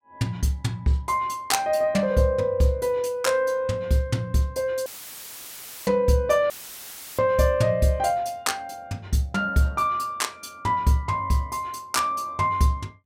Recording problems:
audio cutting out; at 5 s for 1 s and at 6.5 s for 0.5 s; filled with static

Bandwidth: 16.5 kHz